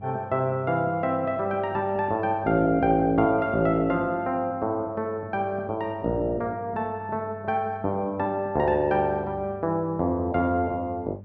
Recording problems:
hum; 50 Hz, harmonics up to 500 Hz, SNR 18 dB

